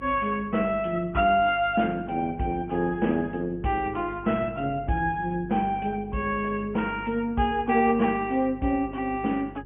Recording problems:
treble missing; nothing above 3.1 kHz
lossy compression; Opus, log-spectral distance 2 dB
electrical hum; 50 Hz, harmonics up to 450 Hz, SNR 18 dB

